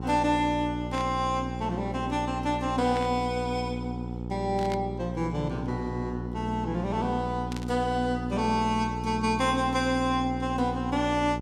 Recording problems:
electrical hum; 60 Hz, harmonics up to 960 Hz, SNR 6 dB
burst of static; 4 times, first at 1 s; peak -6 dB vs average level

